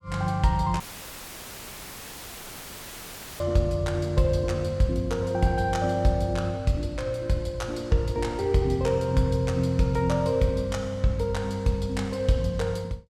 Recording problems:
audio cutting out; at 1 s for 2.5 s; filled with static

